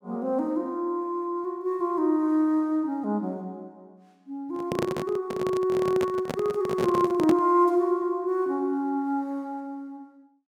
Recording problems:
handling noise; from 4.5 to 7.5 s; peak +1 dB vs average level

